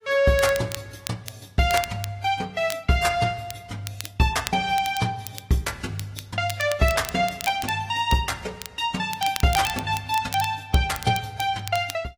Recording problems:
codec artefacts; AAC, log-spectral distance 3 dB
crackle; vinyl, SNR 13 dB

